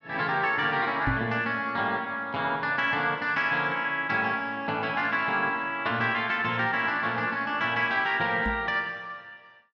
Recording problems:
microphone thump; at 1 s and at 8.5 s; peak +1 dB vs average level

